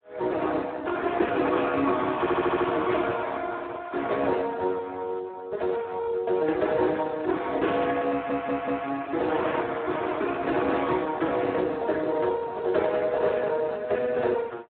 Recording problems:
telephone audio; 280 Hz to 2.1 kHz, Speex
stutter; at 2 s and at 8 s

